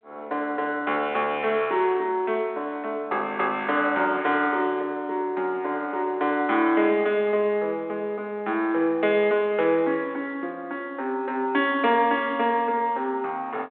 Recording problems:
telephone audio; 240 Hz to 3.7 kHz, G.726

